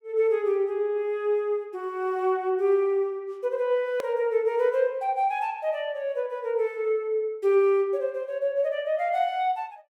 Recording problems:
edit click; at 4 s

